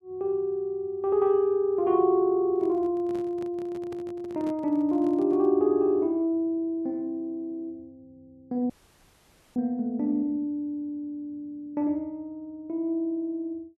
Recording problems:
handling noise; from 2.5 to 5.5 s; peak -12 dB vs average level
dropout; at 8.5 s for 1 s

